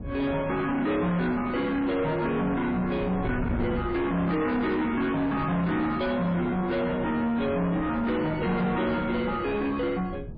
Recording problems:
codec artefacts; MP3, log-spectral distance 2 dB, nothing above 4.5 kHz
distorted audio; soft clipping, signal-to-distortion ratio 8 dB
wind noise; below 300 Hz, SNR 11 dB

